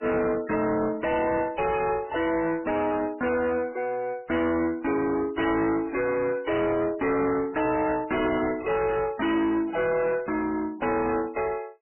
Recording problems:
codec artefacts; MP3, log-spectral distance 4 dB, nothing above 2.5 kHz
distortion; soft clipping, signal-to-distortion ratio 7 dB

